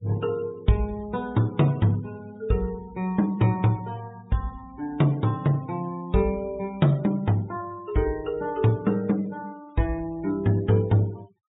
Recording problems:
treble cut off; nothing above 4 kHz
denoising artefacts; signal-to-artefact ratio 24 dB

